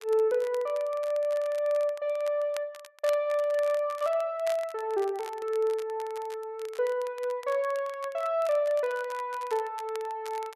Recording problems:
crackle; vinyl, SNR 20 dB

